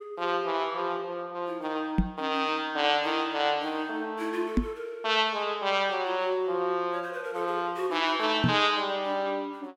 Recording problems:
microphone thump; at 2 s, at 4.5 s and at 8.5 s; peak +7 dB vs average level

